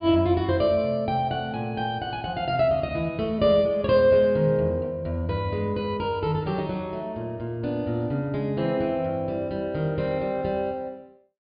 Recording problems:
treble missing; nothing above 4.9 kHz

